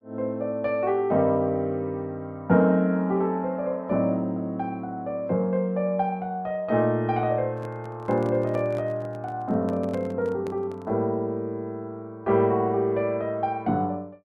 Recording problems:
handling noise; from 7.5 to 11 s; peak -9 dB vs average level

